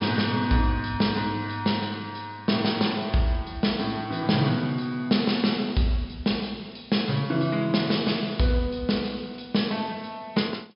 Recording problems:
treble missing; nothing above 5.5 kHz

